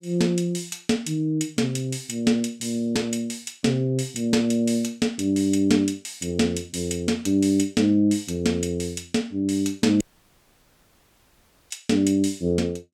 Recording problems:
dropout; at 10 s for 1.5 s

